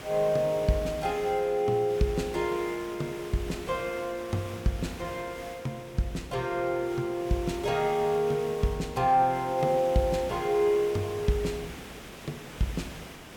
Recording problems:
hiss; slope -4 dB per octave, SNR 14 dB

